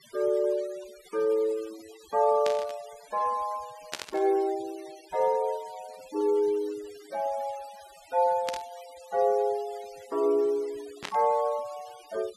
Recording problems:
noise reduction artefacts; signal-to-artefact ratio 22 dB
static burst; 4 times, first at 2.5 s; peak 0 dB vs average level

